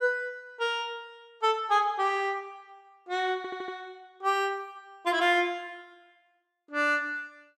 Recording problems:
stutter; at 3.5 s

